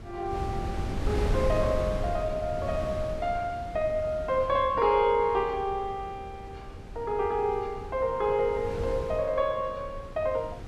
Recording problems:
wind noise; below 220 Hz, SNR 8 dB

